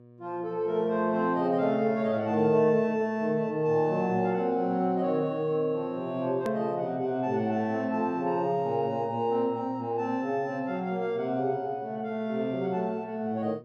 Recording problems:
hum; 60 Hz, harmonics up to 1.1 kHz, SNR 25 dB
edit click; at 6.5 s

